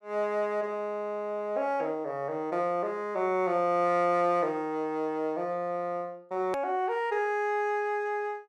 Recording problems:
click at an edit; at 6.5 s

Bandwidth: 12 kHz